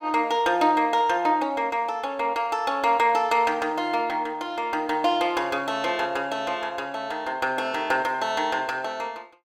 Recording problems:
none

